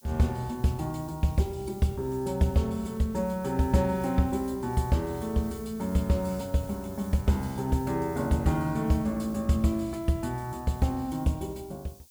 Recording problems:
background hiss; SNR 22 dB

